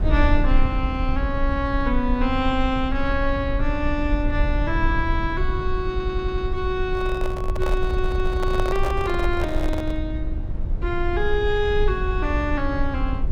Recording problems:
rumble; below 62 Hz, SNR 2 dB
stutter; at 6 s and at 8 s
microphone handling noise; from 7 to 10 s; peak 0 dB vs average level

